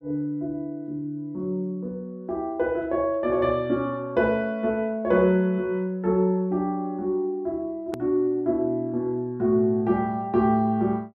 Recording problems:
edit click; at 8 s

